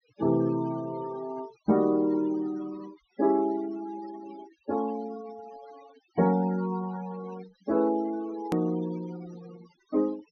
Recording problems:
treble cut off; nothing above 6.3 kHz
denoising artefacts; signal-to-artefact ratio 19 dB
edit click; at 8.5 s

